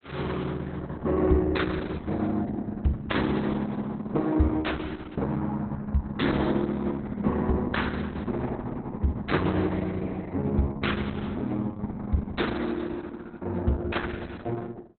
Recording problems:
lossy codec; Opus, log-spectral distance 4 dB, nothing above 4 kHz

